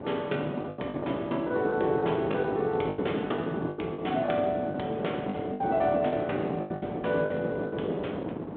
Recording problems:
telephone audio; 240 Hz to 3.6 kHz, G.726
wind noise; below 550 Hz, SNR 4 dB
lost packets; 12% of the sound replaced, filled with the last packet

